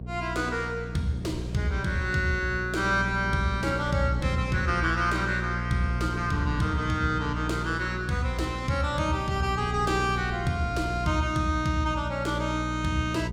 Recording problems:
hum; 60 Hz, harmonics up to 480 Hz, SNR 6 dB
wind on the microphone; below 320 Hz, SNR 17 dB

